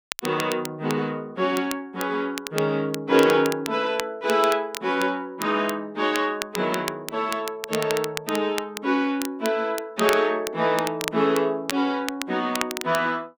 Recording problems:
crackling; vinyl, SNR 10 dB

